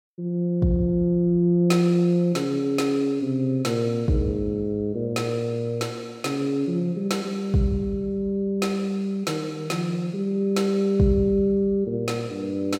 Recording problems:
none

